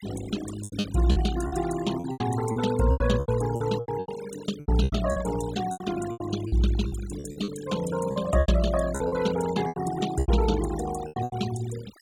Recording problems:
denoising artefacts; signal-to-artefact ratio 12 dB
packet loss; 15% of the sound replaced, filled with repeated pitch periods

